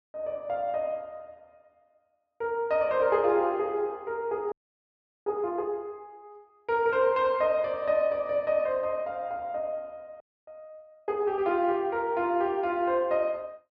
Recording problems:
treble cut off; nothing above 8 kHz
frozen audio; at 4.5 s for 0.5 s and at 10 s

